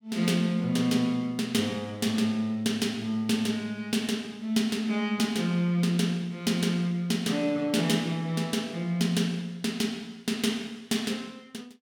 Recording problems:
none

